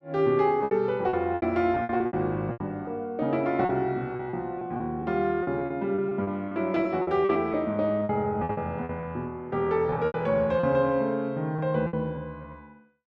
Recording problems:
packet loss; 12% of the sound replaced, filled with repeated pitch periods

